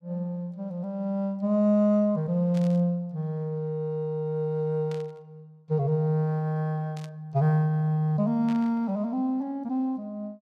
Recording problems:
static burst; 4 times, first at 2.5 s; peak -14 dB vs average level

